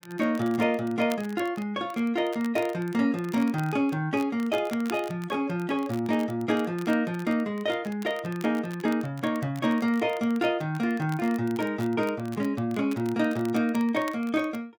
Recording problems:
crackle; vinyl, SNR 21 dB

